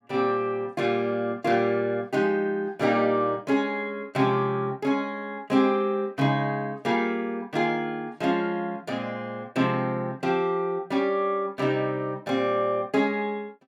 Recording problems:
none

